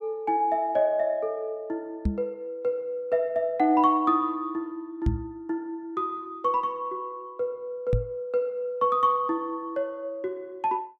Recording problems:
microphone bump; at 2 s, at 5 s and at 8 s; peak +6 dB vs average level

